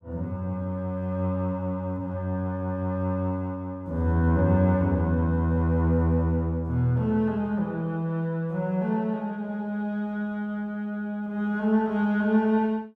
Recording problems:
none

